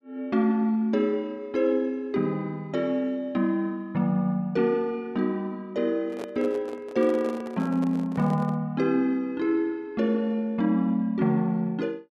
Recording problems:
handling noise; from 6 to 8.5 s; peak -7 dB vs average level

